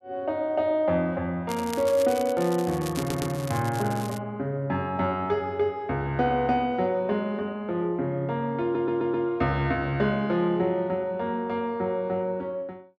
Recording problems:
crackling; from 1.5 to 4 s; loose cable, SNR 14 dB
stutter; at 3 s and at 8.5 s

